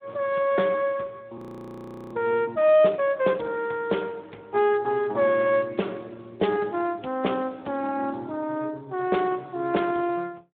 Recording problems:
telephone audio; 220 Hz to 3.4 kHz, Speex
audio freezing; at 1.5 s for 1 s

